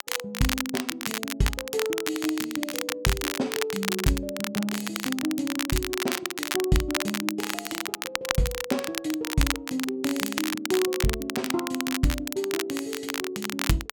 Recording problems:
crackle; vinyl, SNR 2 dB

